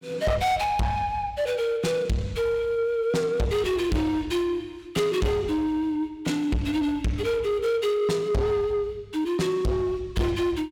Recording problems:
distorted audio; soft clipping, signal-to-distortion ratio 6 dB

